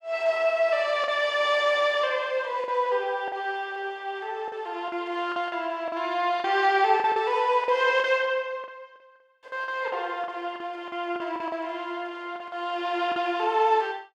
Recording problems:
lost packets; 8% of the sound replaced, filled with the last packet

